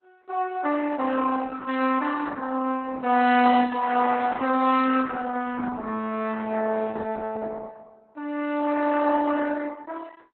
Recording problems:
lossy codec; Opus, log-spectral distance 4 dB, nothing above 4.1 kHz

